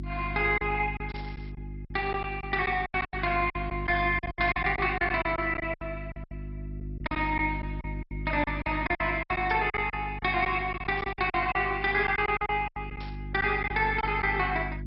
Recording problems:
lossy compression; MP2, log-spectral distance 2 dB, nothing above 5 kHz
electrical hum; 50 Hz, harmonics up to 350 Hz, SNR 10 dB
packet loss; 14% of the sound replaced, filled with silence
static burst; 5 times, first at 1 s; peak -13 dB vs average level

